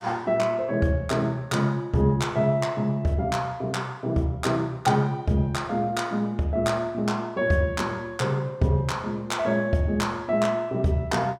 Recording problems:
none

